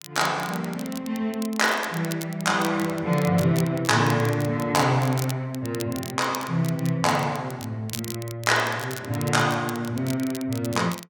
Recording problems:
crackle; vinyl, SNR 14 dB

